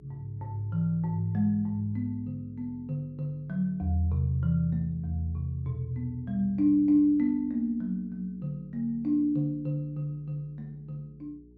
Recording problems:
electrical hum; 60 Hz, harmonics up to 420 Hz, SNR 26 dB

